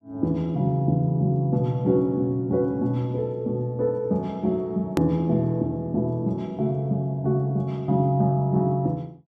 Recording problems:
hard cut with a click; at 5 s

